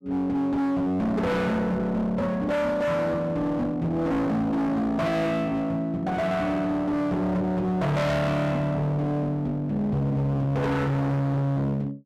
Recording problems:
distorted audio; hard clipping, uneven, signal-to-distortion ratio 5 dB

